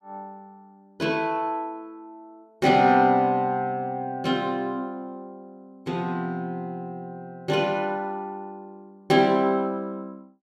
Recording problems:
none

